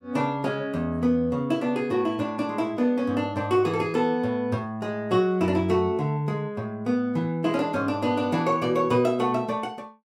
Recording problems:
none

